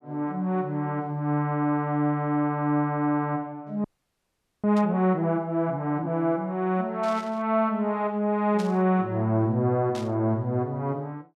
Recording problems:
frozen audio; at 4 s for 1 s
burst of static; 4 times, first at 5 s; peak -10 dB vs average level

